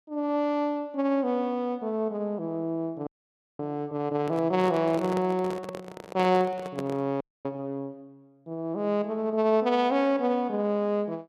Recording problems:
audio freezing; at 3 s for 0.5 s and at 7 s
handling noise; from 4 to 7 s; peak -4 dB vs average level

